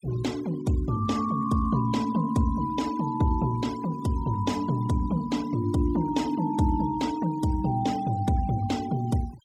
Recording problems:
denoising artefacts; signal-to-artefact ratio 19 dB

